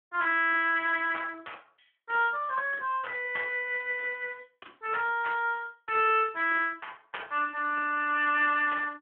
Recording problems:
telephone audio; 300 Hz to 3.3 kHz, Speex

